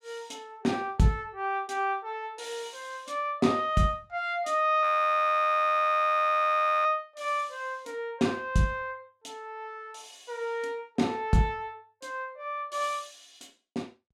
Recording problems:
frozen audio; at 5 s for 2 s

